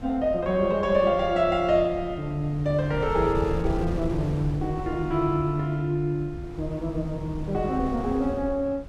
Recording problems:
wind on the microphone; below 160 Hz, SNR 11 dB

